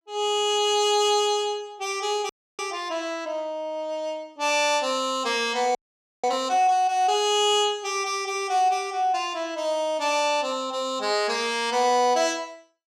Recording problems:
audio freezing; at 2.5 s and at 6 s

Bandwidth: 14.5 kHz